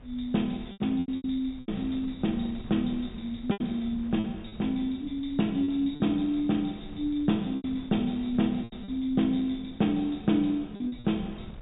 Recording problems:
treble missing; nothing above 4 kHz
wind on the microphone; below 130 Hz, SNR 19 dB
lost packets; 8% of the sound replaced, filled with repeated pitch periods

